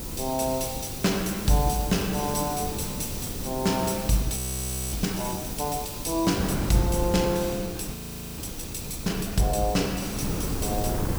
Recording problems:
hiss; slope +7 dB per octave, SNR 9 dB
wind on the microphone; below 310 Hz, SNR 8 dB
audio freezing; at 4.5 s for 0.5 s and at 8 s

